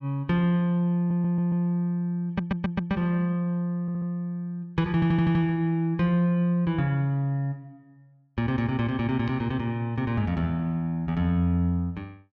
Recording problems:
stutter; 4 times, first at 1 s

